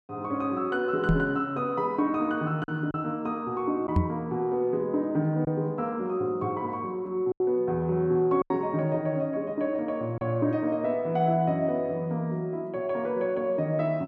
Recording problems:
packet loss; 2% of the sound replaced, filled with silence
microphone bump; at 1 s and at 4 s; peak +7 dB vs average level

